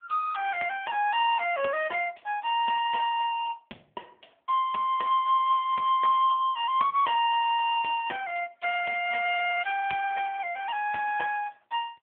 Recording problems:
telephone audio; 390 Hz to 3.3 kHz, AMR-NB

